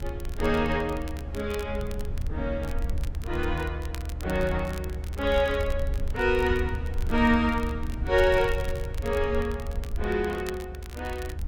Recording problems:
low-frequency rumble; below 74 Hz, SNR 6 dB
wind noise; below 130 Hz, SNR 15 dB
crackling; vinyl, SNR 20 dB

